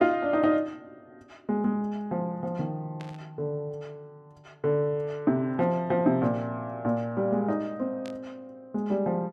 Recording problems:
burst of static; at 3 s and at 8 s; peak -14 dB vs average level

